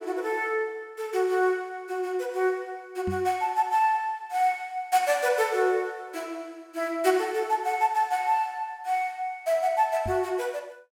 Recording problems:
knock on the microphone; at 3 s and at 10 s; peak -3 dB vs average level

